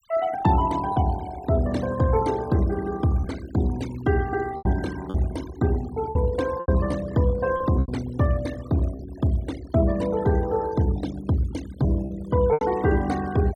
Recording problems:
noise reduction artefacts; signal-to-artefact ratio 18 dB
lost packets; 4% of the sound replaced, filled with repeated pitch periods

